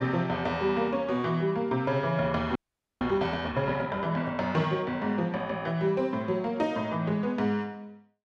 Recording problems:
audio freezing; at 2.5 s

